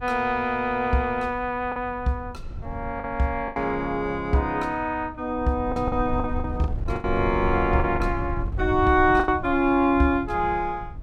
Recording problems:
wind on the microphone; below 96 Hz, SNR 10 dB
packet loss; 6% of the sound replaced, filled with the last packet

